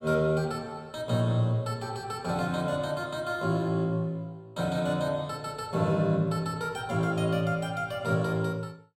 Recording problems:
none

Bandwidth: 16.5 kHz